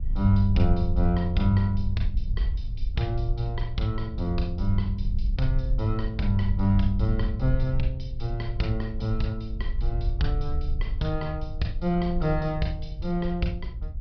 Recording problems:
treble cut off; nothing above 5.5 kHz
wind noise; below 58 Hz, SNR 4 dB

